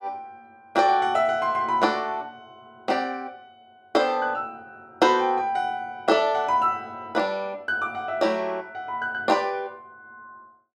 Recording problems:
none

